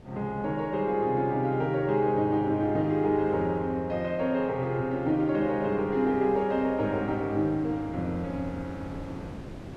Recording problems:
wind noise; below 440 Hz, SNR 18 dB

